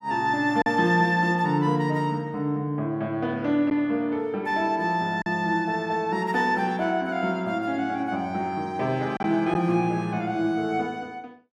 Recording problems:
lost packets; 1.2% of the sound replaced, filled with silence

